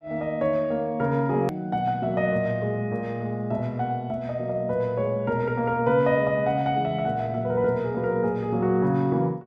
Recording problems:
click at an edit; at 1.5 s

